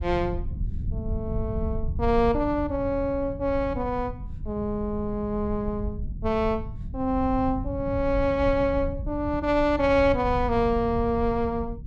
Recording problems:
low-frequency rumble; below 100 Hz, SNR 8 dB

